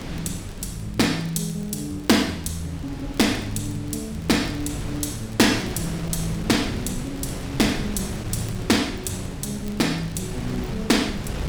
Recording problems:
wind on the microphone; below 400 Hz, SNR 10 dB
crackling; vinyl, SNR 27 dB

